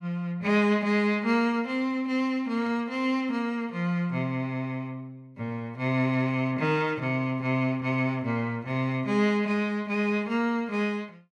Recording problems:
none

